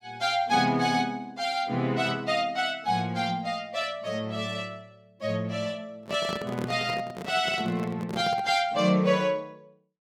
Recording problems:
handling noise; from 6 to 8.5 s; peak -2 dB vs average level

